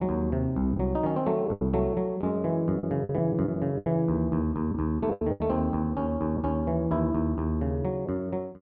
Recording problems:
packet loss; 7% of the sound replaced, filled with the last packet

